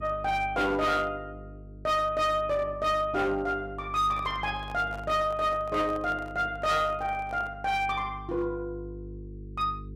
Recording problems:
distorted audio; hard clipping, signal-to-distortion ratio 12 dB
hum; 50 Hz, harmonics up to 450 Hz, SNR 16 dB
microphone handling noise; from 4 to 7.5 s; peak -11 dB vs average level

